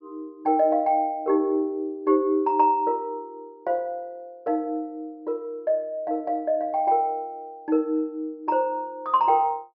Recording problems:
treble cut off; nothing above 5.6 kHz

